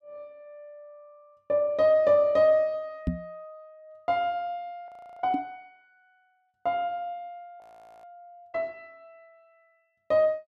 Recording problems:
knock on the microphone; at 3 s and at 5.5 s; peak +2 dB vs average level
audio freezing; at 5 s and at 7.5 s

